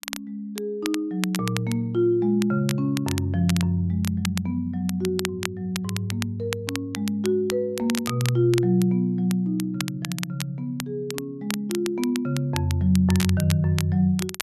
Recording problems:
crackle; vinyl, SNR 11 dB

